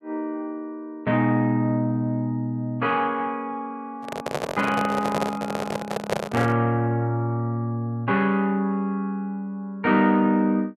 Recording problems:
handling noise; from 4 to 6.5 s; peak +4 dB vs average level

